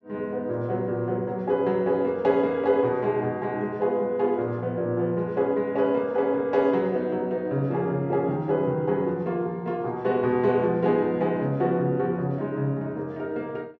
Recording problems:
none

